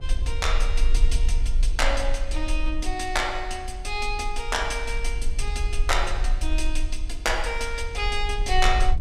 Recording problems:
rumble; below 44 Hz, strongest tone 18 Hz, SNR 1 dB

